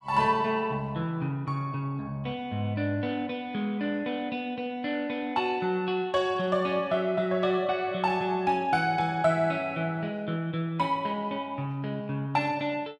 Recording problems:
none

